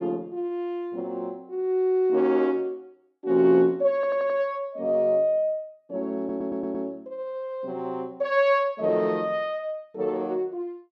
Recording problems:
stutter; at 4 s and at 6 s

